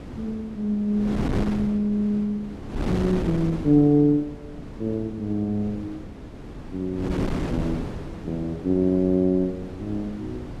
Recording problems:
wind on the microphone; below 380 Hz, SNR 9 dB

